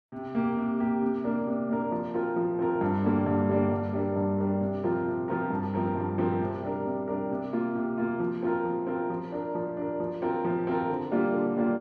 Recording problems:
none

